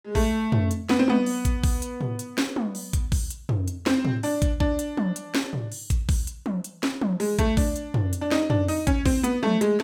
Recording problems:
none

